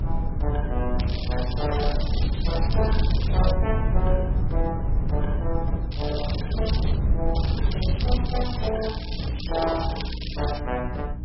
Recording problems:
lossy codec; AAC, then MP3, log-spectral distance 5 dB, nothing above 5.3 kHz
hum; 60 Hz, harmonics up to 300 Hz, SNR 6 dB
low-frequency rumble; below 66 Hz, SNR 9 dB
wind noise; below 100 Hz, SNR -3 dB
crackle; from 1 to 3.5 s, from 6 to 7 s and from 7.5 to 11 s; loose cable, SNR 7 dB

